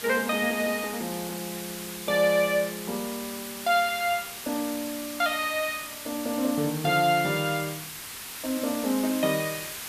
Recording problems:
background hiss; slope +1 dB per octave, SNR 9 dB
crackle; from 0.5 to 2.5 s; loose cable, SNR 27 dB

